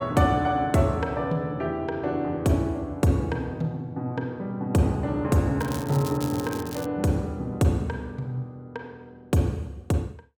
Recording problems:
crackle; from 5.5 to 7 s; loose cable, SNR 15 dB

